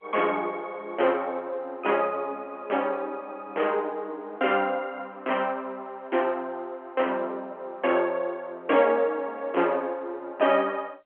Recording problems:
telephone audio; 240 Hz to 3.3 kHz, G.711

